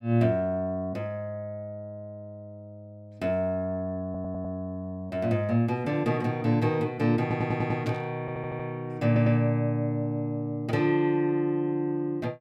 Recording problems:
stutter; 4 times, first at 4 s
burst of static; at 8 s; peak -11 dB vs average level

